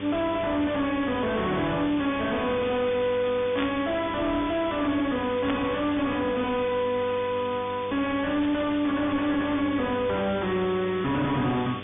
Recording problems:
treble cut off; nothing above 3.5 kHz
distortion; soft clipping, signal-to-distortion ratio 5 dB
electrical hum; 50 Hz, harmonics up to 1.8 kHz, SNR 15 dB
hiss; SNR 14 dB
static burst; at 3.5 s and at 5.5 s; peak -2 dB vs average level

